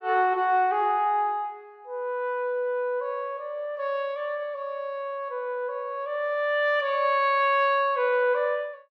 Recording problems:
none

